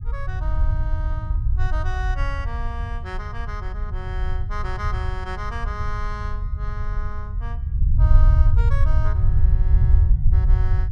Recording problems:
rumble; below 78 Hz, SNR -12 dB

